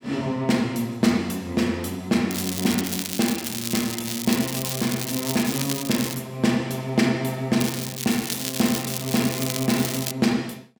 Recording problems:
crackle; from 2.5 to 4 s, from 4 to 6 s and from 7.5 to 10 s; loose cable, SNR 4 dB

